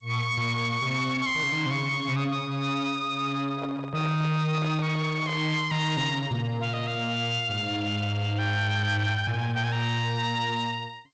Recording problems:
lossy compression; G.722, log-spectral distance 2 dB, nothing above 7.6 kHz
distortion; soft clipping, signal-to-distortion ratio 11 dB
microphone handling noise; from 3.5 to 5.5 s; peak -6 dB vs average level

